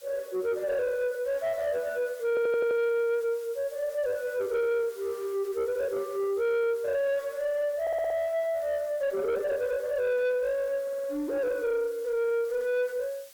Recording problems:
distorted audio; soft clipping, signal-to-distortion ratio 11 dB
hiss; SNR 23 dB
stutter; at 2.5 s, at 8 s and at 11 s

